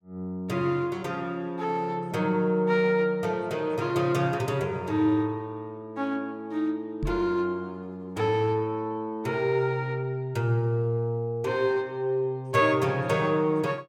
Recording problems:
microphone bump; at 7 s; peak -1 dB vs average level

